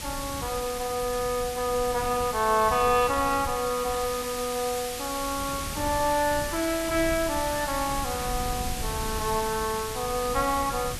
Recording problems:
hiss; slope +1 dB per octave, SNR 7 dB
wind noise; below 150 Hz, SNR 13 dB

